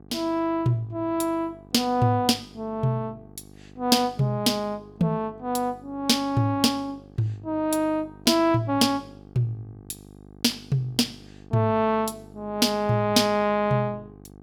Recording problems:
hum; 50 Hz, harmonics up to 1.2 kHz, SNR 23 dB

